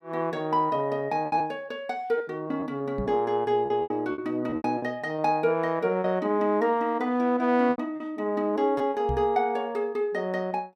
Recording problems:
packet loss; 7% of the sound replaced, filled with repeated pitch periods
microphone thump; at 3 s and at 9 s; peak -2 dB vs average level

